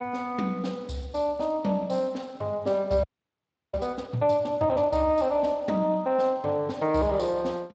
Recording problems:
lossy compression; Speex, log-spectral distance 3 dB
frozen audio; at 3 s for 0.5 s

